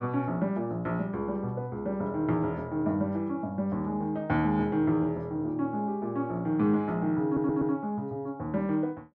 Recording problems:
stutter; at 7.5 s

